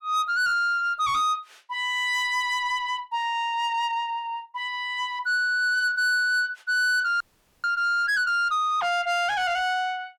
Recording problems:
distortion; soft clipping, signal-to-distortion ratio 11 dB
audio freezing; at 7 s

